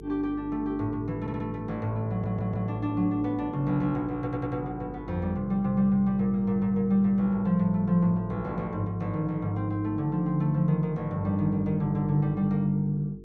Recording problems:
electrical hum; 50 Hz, harmonics up to 450 Hz, SNR 17 dB
stutter; at 1 s, at 2 s and at 4 s

